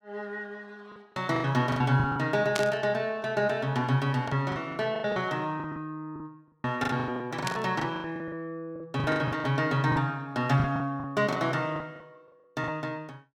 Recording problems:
lost packets; 14% of the sound replaced, filled with the last packet
burst of static; at 2.5 s and at 7.5 s; peak +3 dB vs average level

